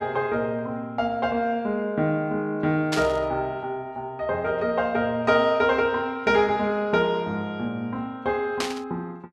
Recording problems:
static burst; at 3 s and at 8.5 s; peak +1 dB vs average level

